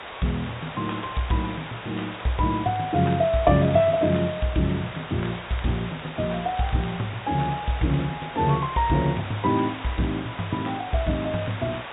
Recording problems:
low-pass filter; nothing above 4 kHz
hiss; SNR 11 dB
crackle; vinyl, SNR 27 dB

